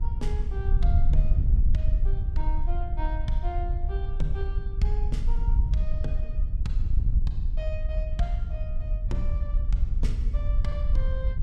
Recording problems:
wind on the microphone; below 58 Hz, SNR -10 dB

